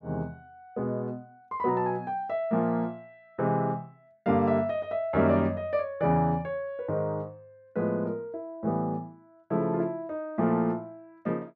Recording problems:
none

